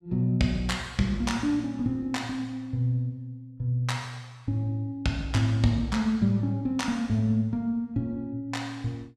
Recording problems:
none

